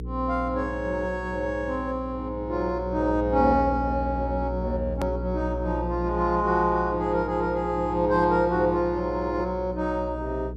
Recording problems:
hum; 60 Hz, harmonics up to 480 Hz, SNR 9 dB
hard cut with a click; at 5 s

